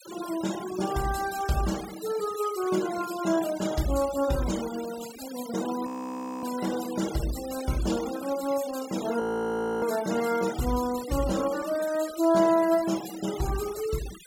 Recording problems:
denoising artefacts; signal-to-artefact ratio 13 dB
audio freezing; at 6 s for 0.5 s and at 9 s for 0.5 s

